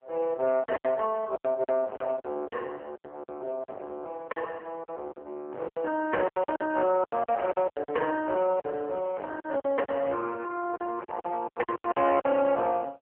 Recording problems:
phone line; 280 Hz to 2.9 kHz, AMR-NB
distorted audio; hard clipping, uneven, signal-to-distortion ratio 8 dB
packet loss; 13% of the sound replaced, filled with silence

